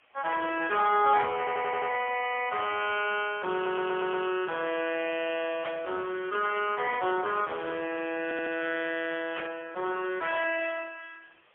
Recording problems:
telephone audio; 340 Hz to 3.3 kHz, AMR-NB, then MP3
background hiss; SNR 30 dB
audio stuttering; at 1.5 s, at 3.5 s and at 8 s
static burst; at 5.5 s and at 9.5 s; peak -3 dB vs average level

